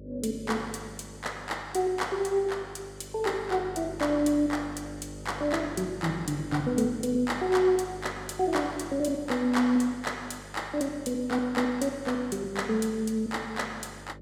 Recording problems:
electrical hum; 50 Hz, harmonics up to 600 Hz, SNR 16 dB

